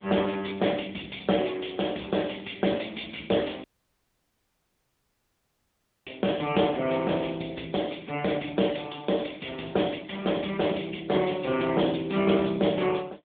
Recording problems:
telephone audio; 170 Hz to 3.6 kHz, AMR-NB
dropout; at 3.5 s for 2.5 s

